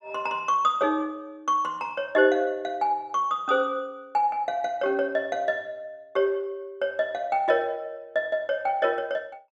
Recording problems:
none

